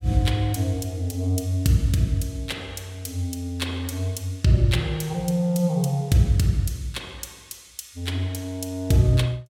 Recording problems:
none

